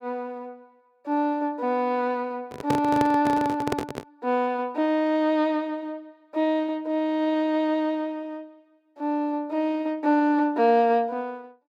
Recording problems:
microphone handling noise; from 2.5 to 4 s; peak +2 dB vs average level

